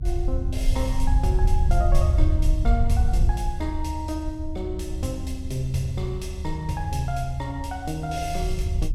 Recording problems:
low-frequency rumble; below 72 Hz, SNR -4 dB

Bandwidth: 16.5 kHz